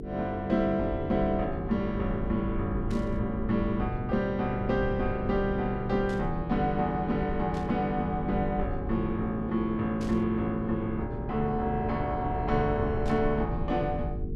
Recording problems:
hum; 50 Hz, harmonics up to 450 Hz, SNR 10 dB
low-frequency rumble; below 96 Hz, SNR 10 dB
burst of static; 5 times, first at 3 s; peak -13 dB vs average level

